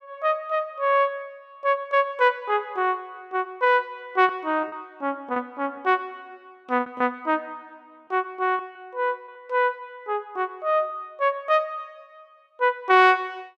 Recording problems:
packet loss; 3% of the sound replaced, filled with repeated pitch periods

